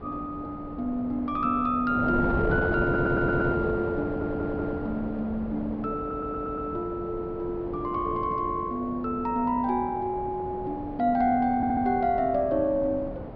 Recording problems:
low-pass filter; nothing above 5.5 kHz
wind on the microphone; below 590 Hz, SNR 7 dB
audio stuttering; 4 times, first at 3 s

